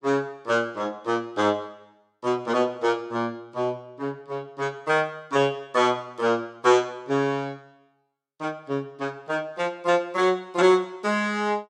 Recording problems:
none

